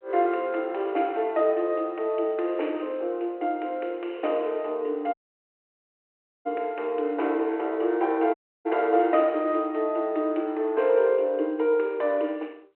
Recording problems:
phone line; 280 Hz to 3.1 kHz, G.726
audio cutting out; at 5 s for 1.5 s and at 8.5 s

